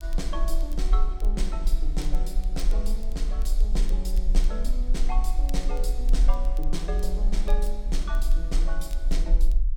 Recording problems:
rumble; below 40 Hz, strongest tone 22 Hz, SNR -8 dB
crackle; vinyl, SNR 19 dB

